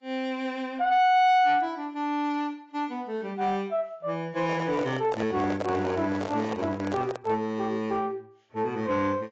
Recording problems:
lossy compression; AAC, log-spectral distance 2 dB
distorted audio; soft clipping, signal-to-distortion ratio 11 dB
microphone handling noise; from 4.5 to 7.5 s; peak 0 dB vs average level

